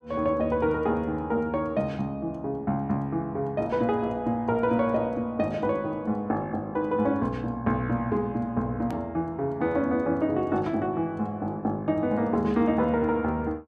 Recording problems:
click at an edit; at 9 s

